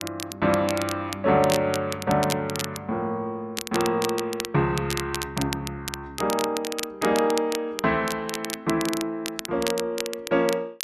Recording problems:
crackle; vinyl, SNR 8 dB

